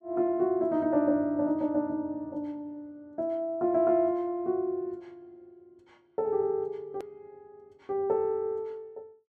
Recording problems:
click at an edit; at 7 s

